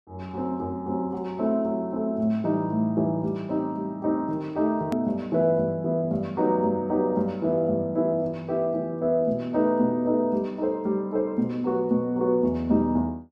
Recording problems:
hard cut with a click; at 5 s

